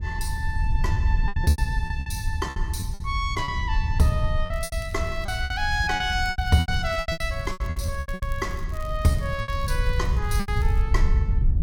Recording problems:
wind on the microphone; below 80 Hz, SNR 0 dB
packet loss; 14% of the sound replaced, filled with repeated pitch periods
crackling; from 4.5 to 7 s, from 7 to 8.5 s and from 8.5 to 11 s; loose cable, SNR 23 dB

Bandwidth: 17 kHz